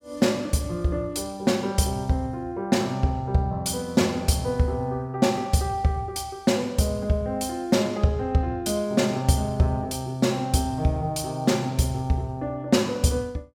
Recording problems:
none

